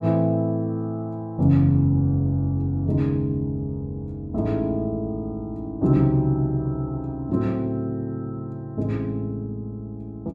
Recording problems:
none

